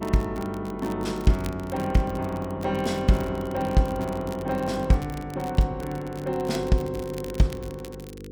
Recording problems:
electrical hum; 50 Hz, harmonics up to 500 Hz, SNR 13 dB
crackle; vinyl, SNR 20 dB

